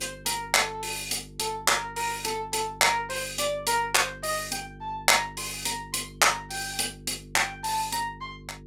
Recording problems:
hum; 50 Hz, harmonics up to 450 Hz, SNR 20 dB

